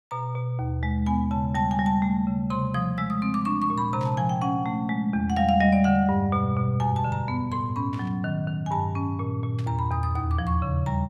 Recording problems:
burst of static; at 4 s, at 8 s and at 9.5 s; peak -16 dB vs average level

